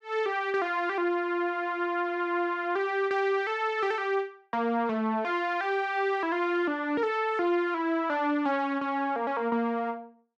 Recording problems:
none

